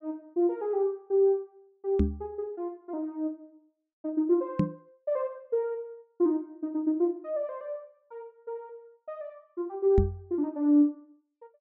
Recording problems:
treble cut off; nothing above 8 kHz
microphone bump; at 2 s, at 4.5 s and at 10 s; peak +8 dB vs average level

